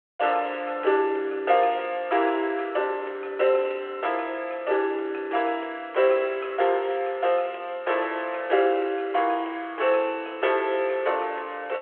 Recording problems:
phone line; 340 Hz to 3.4 kHz, G.726

